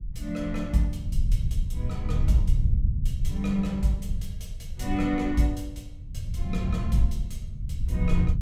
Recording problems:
rumble; below 86 Hz, SNR 2 dB

